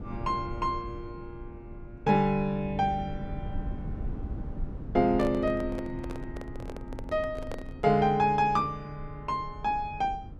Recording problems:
low-frequency rumble; below 140 Hz, SNR 13 dB
microphone handling noise; from 5 to 8 s; peak -5 dB vs average level

